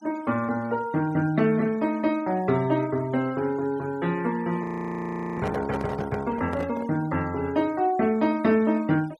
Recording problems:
noise reduction artefacts; signal-to-artefact ratio 22 dB
microphone handling noise; from 4.5 to 7 s; peak -4 dB vs average level
audio freezing; at 4.5 s for 0.5 s

